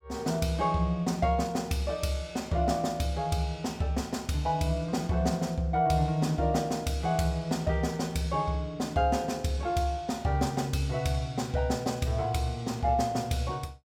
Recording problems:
none

